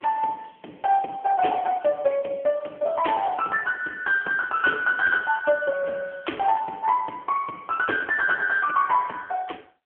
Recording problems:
phone line; 340 Hz to 3.2 kHz, AMR-NB

